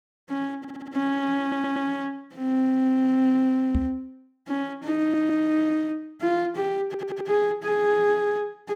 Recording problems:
audio stuttering; 4 times, first at 0.5 s
microphone bump; at 4 s; peak +3 dB vs average level

